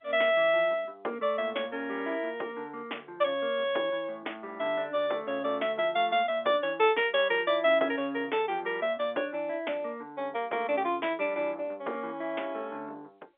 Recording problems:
telephone audio; 300 Hz to 3.6 kHz, G.711

